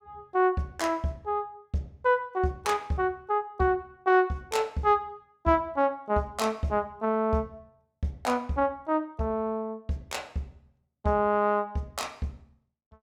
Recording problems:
none

